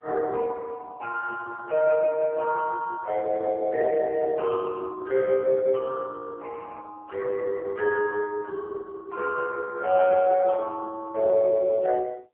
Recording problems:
phone line; 370 Hz to 3.7 kHz, AMR-NB

